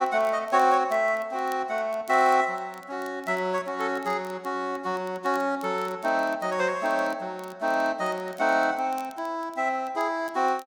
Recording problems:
crackling; vinyl, SNR 27 dB

